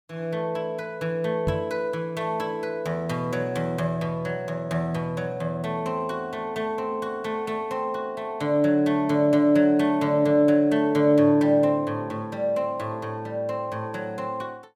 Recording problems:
microphone thump; at 1.5 s; peak +3 dB vs average level

